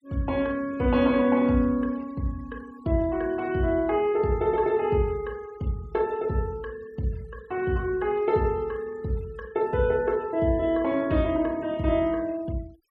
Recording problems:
noise reduction artefacts; signal-to-artefact ratio 26 dB

